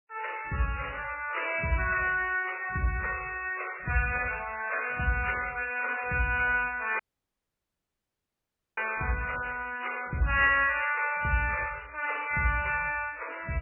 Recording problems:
lossy compression; AAC, then MP3, log-spectral distance 7 dB, nothing above 2.7 kHz
dropout; at 7 s for 2 s

